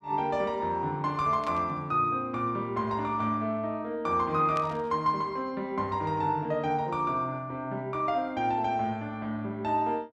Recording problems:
static burst; at 1.5 s and at 4.5 s; peak -8 dB vs average level

